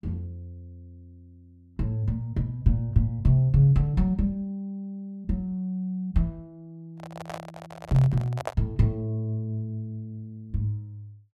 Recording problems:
microphone handling noise; from 7 to 8.5 s; peak 0 dB vs average level

